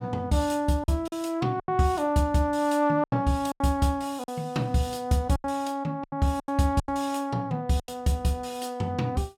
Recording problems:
lost packets; 8% of the sound replaced, filled with silence

